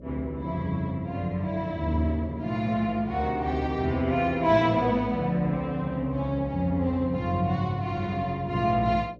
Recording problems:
hum; 60 Hz, harmonics up to 600 Hz, SNR 19 dB

